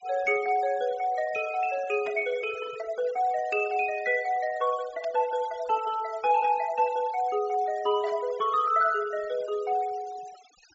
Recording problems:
treble missing; nothing above 8 kHz
noise reduction artefacts; signal-to-artefact ratio 20 dB
burst of static; at 2 s, at 5 s and at 8 s; peak -13 dB vs average level

